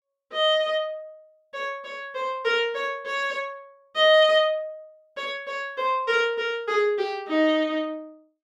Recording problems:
none

